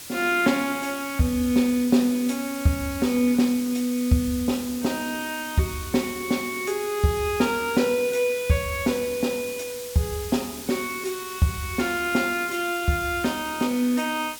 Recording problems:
hiss; SNR 12 dB

